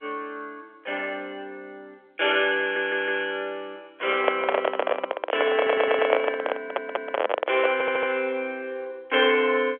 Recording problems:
telephone audio; 340 Hz to 3.4 kHz, G.711
stutter; 4 times, first at 2.5 s
handling noise; from 4 to 7.5 s; peak +7 dB vs average level

